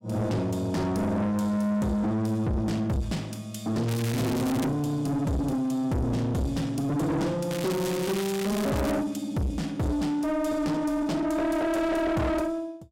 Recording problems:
distortion; soft clipping, signal-to-distortion ratio 7 dB
crackle; at 4 s and from 7.5 to 9 s; loose cable, SNR 9 dB

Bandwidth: 16 kHz